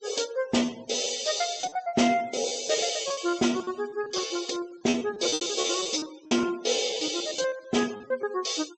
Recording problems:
low-pass filter; nothing above 8 kHz
denoising artefacts; signal-to-artefact ratio 19 dB
packet loss; 16% of the sound replaced, filled with repeated pitch periods

